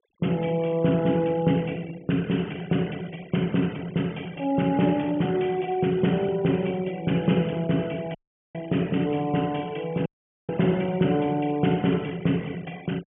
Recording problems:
low-pass filter; nothing above 3.3 kHz
denoising artefacts; signal-to-artefact ratio 23 dB
audio cutting out; at 8 s and at 10 s

